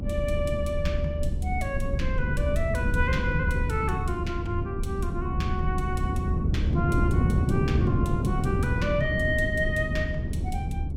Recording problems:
low-frequency rumble; below 74 Hz, SNR 2 dB
wind on the microphone; below 220 Hz, SNR -1 dB

